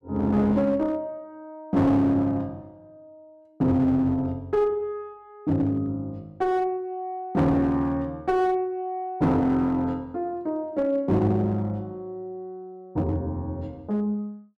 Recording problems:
distortion; hard clipping, uneven, signal-to-distortion ratio 11 dB

